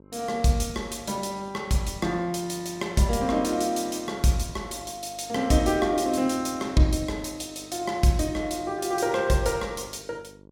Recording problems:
electrical hum; 50 Hz, harmonics up to 1.1 kHz, SNR 24 dB

